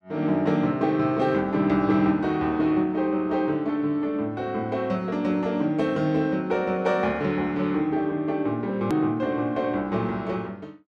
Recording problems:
hard cut with a click; at 9 s

